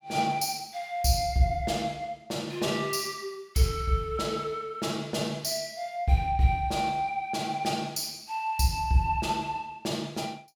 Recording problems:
none

